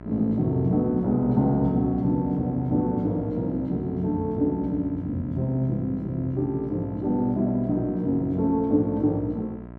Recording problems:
hum; 60 Hz, harmonics up to 1.7 kHz, SNR 16 dB

